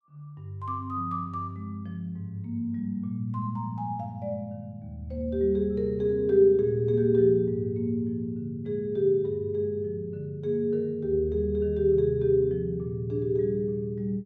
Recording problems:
none

